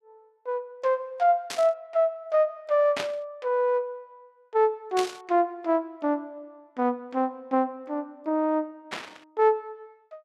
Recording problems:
static burst; 4 times, first at 1.5 s; peak -1 dB vs average level

